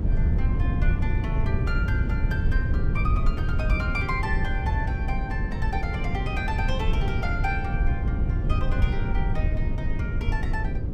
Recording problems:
electrical hum; 60 Hz, harmonics up to 540 Hz, SNR 7 dB
low-frequency rumble; below 100 Hz, SNR -6 dB

